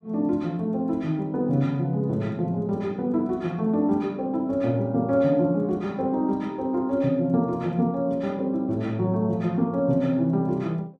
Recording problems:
none

